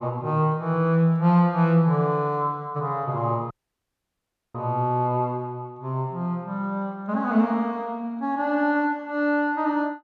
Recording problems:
audio cutting out; at 3.5 s for 1 s

